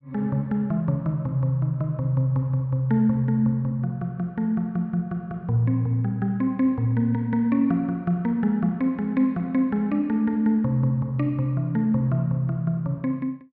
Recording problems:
none

